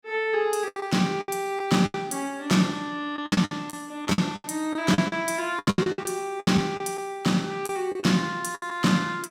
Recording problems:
lost packets; 14% of the sound replaced, filled with the last packet

